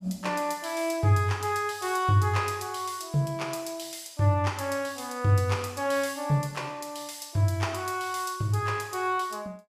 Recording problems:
none

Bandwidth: 15 kHz